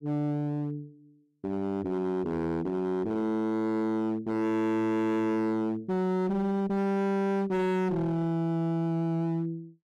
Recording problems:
distorted audio; hard clipping, uneven, signal-to-distortion ratio 5 dB

